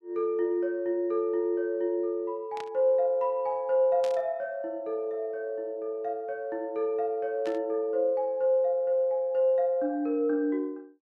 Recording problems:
burst of static; at 2.5 s, at 4 s and at 7.5 s; peak -10 dB vs average level

